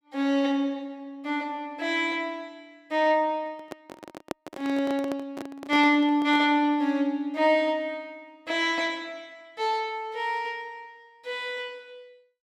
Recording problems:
handling noise; from 3.5 to 6.5 s; peak -2 dB vs average level

